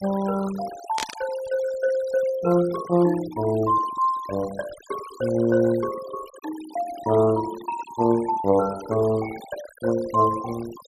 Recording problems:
denoising artefacts; signal-to-artefact ratio 17 dB
burst of static; at 1 s; peak -1 dB vs average level

